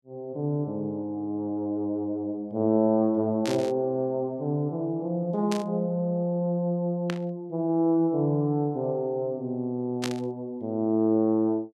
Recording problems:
static burst; 4 times, first at 3.5 s; peak -1 dB vs average level

